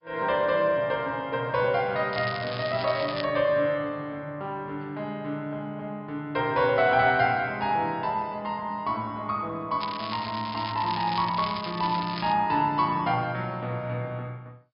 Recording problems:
treble cut off; nothing above 5.2 kHz
lossy compression; MP2, log-spectral distance 4 dB
crackle; from 2 to 3 s and from 10 to 12 s; loose cable, SNR 11 dB

